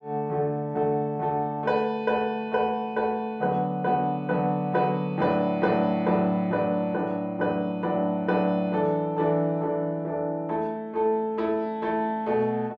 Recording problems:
none

